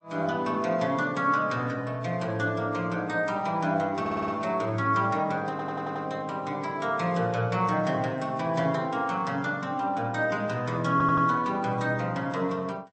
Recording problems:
codec artefacts; MP3, log-spectral distance 2 dB, nothing above 7.3 kHz
audio stuttering; at 4 s, at 5.5 s and at 11 s

